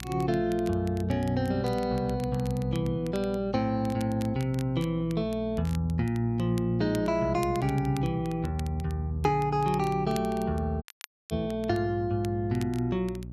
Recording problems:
hum; 60 Hz, harmonics up to 360 Hz, SNR 14 dB
crackling; vinyl, SNR 21 dB
dropout; at 11 s

